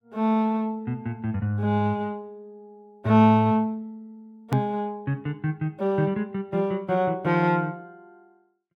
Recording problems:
hard cut with a click; at 4.5 s

